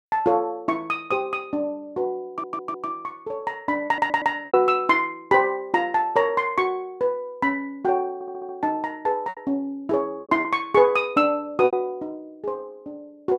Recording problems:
lost packets; 3% of the sound replaced, filled with repeated pitch periods
audio stuttering; at 2.5 s, at 4 s and at 8 s

